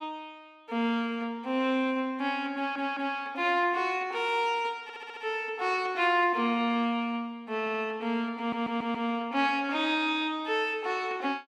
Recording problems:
audio stuttering; 4 times, first at 2.5 s

